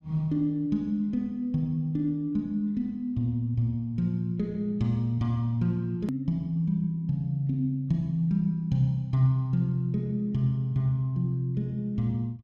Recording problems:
hard cut with a click; at 6 s

